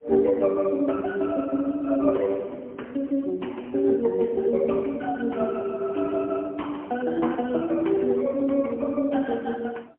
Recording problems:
phone line; 220 Hz to 3.9 kHz, AMR-NB, then MP3

